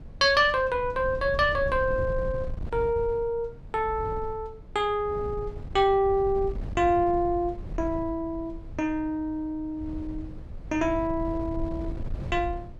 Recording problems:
wind on the microphone; below 110 Hz, SNR 12 dB

